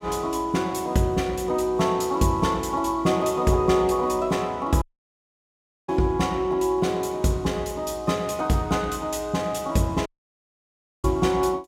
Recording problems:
dropout; at 5 s for 1 s and at 10 s for 1 s

